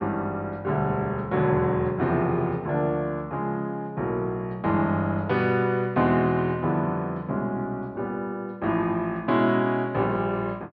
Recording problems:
treble cut off; nothing above 5.5 kHz

